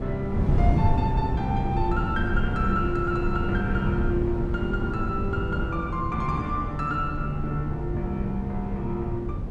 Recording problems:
wind on the microphone; below 170 Hz, SNR 0 dB

